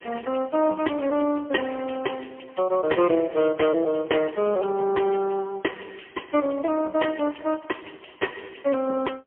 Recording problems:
telephone audio; 240 Hz to 3.2 kHz, AMR-NB, then MP3

